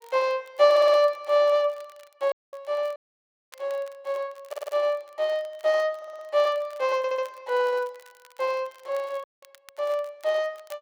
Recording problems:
crackle; vinyl, SNR 29 dB
stutter; 4 times, first at 0.5 s
dropout; at 2.5 s, at 3 s for 0.5 s and at 9 s

